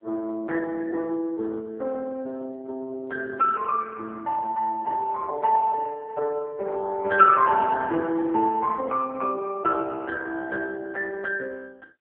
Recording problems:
phone line; 280 Hz to 2.3 kHz, AMR-NB

